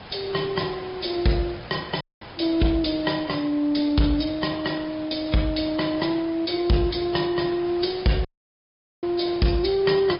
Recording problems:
treble cut off; nothing above 5.2 kHz
codec artefacts; AAC, then MP3, log-spectral distance 6 dB
distortion; soft clipping, signal-to-distortion ratio 12 dB
hiss; SNR 17 dB
dropout; at 2 s and at 8.5 s for 1 s

